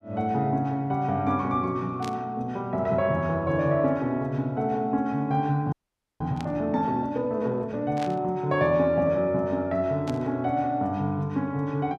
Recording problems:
burst of static; 4 times, first at 2 s; peak -9 dB vs average level
frozen audio; at 5.5 s

